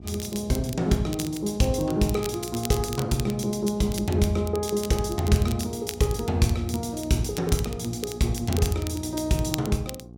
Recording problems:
hum; 60 Hz, harmonics up to 840 Hz, SNR 17 dB
crackling; vinyl, SNR 13 dB

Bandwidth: 16.5 kHz